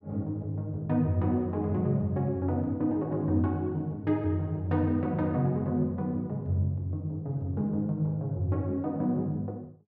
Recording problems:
none

